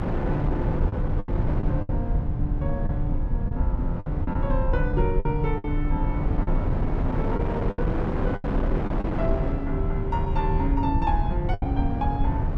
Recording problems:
low-frequency rumble; below 88 Hz, strongest tone 28 Hz, SNR -2 dB
wind noise; below 540 Hz, SNR 2 dB
lost packets; 7% of the sound replaced, filled with the last packet

